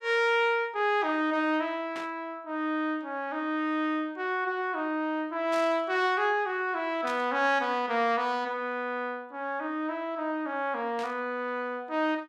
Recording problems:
burst of static; 4 times, first at 2 s; peak -8 dB vs average level

